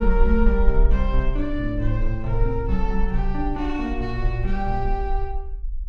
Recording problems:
rumble; below 48 Hz, SNR 0 dB

